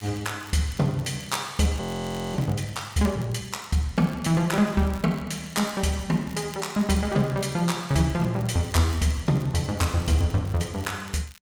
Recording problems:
crackle; vinyl, SNR 23 dB
frozen audio; at 2 s for 0.5 s

